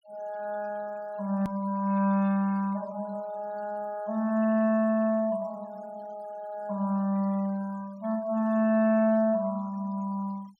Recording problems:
denoising artefacts; signal-to-artefact ratio 27 dB
edit click; at 1.5 s

